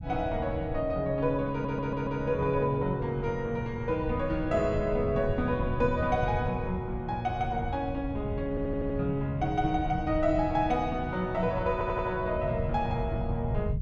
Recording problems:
low-frequency rumble; below 140 Hz, SNR 7 dB
stutter; at 1.5 s, at 8.5 s and at 12 s

